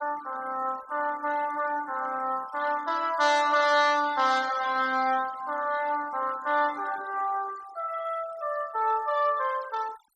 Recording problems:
denoising artefacts; signal-to-artefact ratio 18 dB

